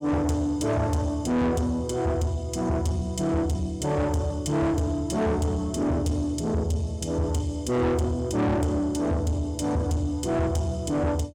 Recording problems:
distorted audio; soft clipping, signal-to-distortion ratio 7 dB

